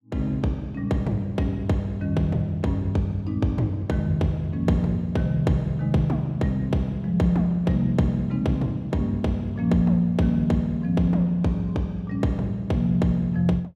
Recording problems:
none

